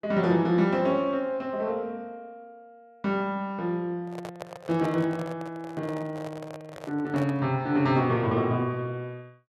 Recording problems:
handling noise; from 4 to 7.5 s; peak -6 dB vs average level

